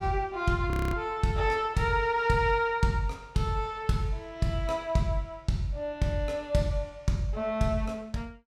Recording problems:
audio freezing; at 0.5 s

